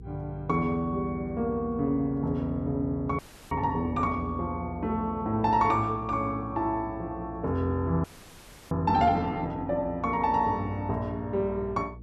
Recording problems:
hum; 60 Hz, harmonics up to 480 Hz, SNR 17 dB
audio freezing; at 3 s and at 8 s for 0.5 s

